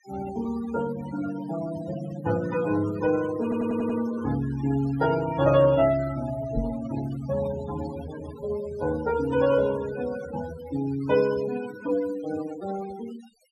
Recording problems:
noise reduction artefacts; signal-to-artefact ratio 13 dB
stutter; at 3.5 s
knock on the microphone; at 6.5 s; peak +2 dB vs average level

